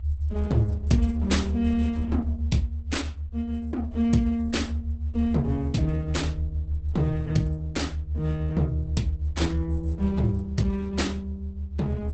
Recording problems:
lossy compression; Opus, log-spectral distance 2 dB, nothing above 8 kHz
rumble; below 78 Hz, strongest tone 72 Hz, SNR 1 dB

